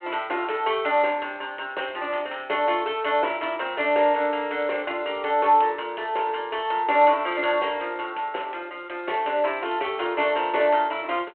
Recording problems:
phone line; 300 Hz to 3.3 kHz, G.726

